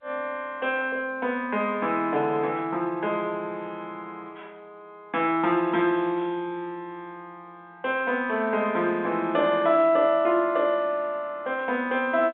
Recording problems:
phone line; 260 Hz to 3.9 kHz, G.711

